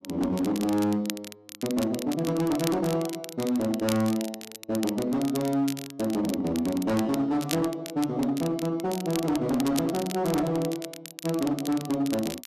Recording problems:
distortion; hard clipping, signal-to-distortion ratio 12 dB
crackling; vinyl, SNR 12 dB

